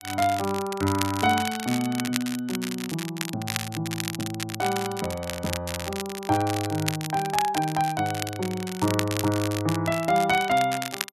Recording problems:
crackle; vinyl, SNR 7 dB

